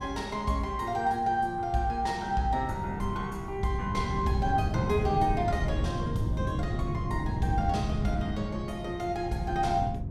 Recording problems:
wind noise; below 170 Hz, SNR 3 dB

